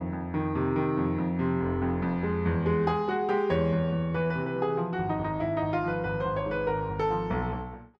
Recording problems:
none

